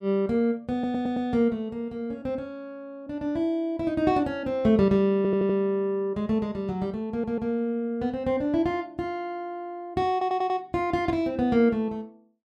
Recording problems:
stutter; 4 times, first at 0.5 s

